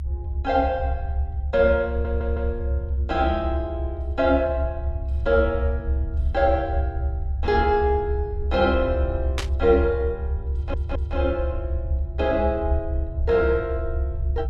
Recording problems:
low-frequency rumble; below 74 Hz, strongest tone 68 Hz, SNR 3 dB
audio stuttering; at 2 s and at 11 s
burst of static; at 9.5 s; peak 0 dB vs average level

